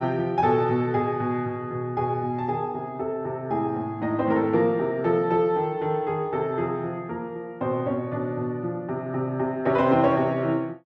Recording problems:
none

